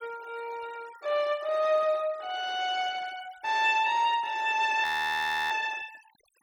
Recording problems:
noise reduction artefacts; signal-to-artefact ratio 24 dB
audio freezing; at 5 s for 0.5 s

